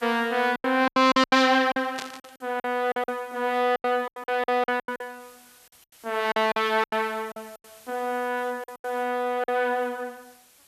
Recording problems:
hiss; slope +1 dB per octave, SNR 27 dB
lost packets; 14% of the sound replaced, filled with silence
burst of static; at 2 s; peak -5 dB vs average level

